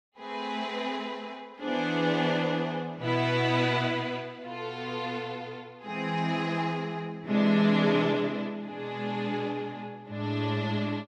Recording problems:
none

